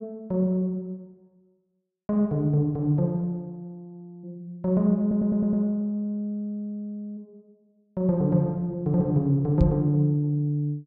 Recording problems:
stutter; at 5 s
microphone thump; at 9.5 s; peak +6 dB vs average level

